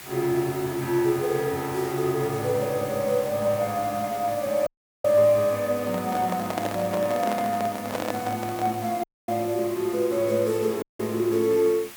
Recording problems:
background hiss; SNR 15 dB
dropout; at 4.5 s, at 9 s and at 11 s
handling noise; from 6 to 9 s; peak 0 dB vs average level

